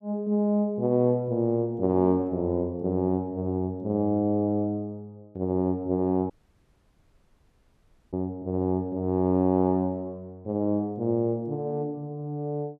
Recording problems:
audio cutting out; at 6.5 s for 2 s

